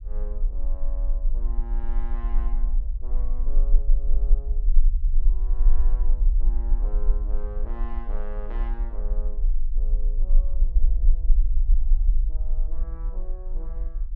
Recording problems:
rumble; below 36 Hz, strongest tone 18 Hz, SNR -18 dB

